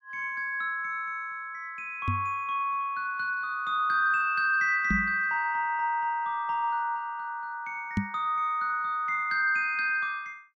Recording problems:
knock on the microphone; at 2 s, at 5 s and at 8 s; peak +4 dB vs average level

